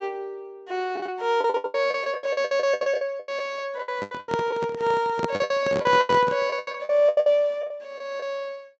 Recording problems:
low-pass filter; nothing above 8 kHz
lost packets; 18% of the sound replaced, filled with the last packet
microphone handling noise; from 4 to 6.5 s; peak +1 dB vs average level

